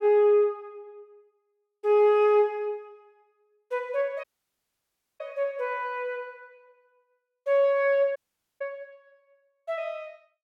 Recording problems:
dropout; at 4 s for 1 s and at 8 s

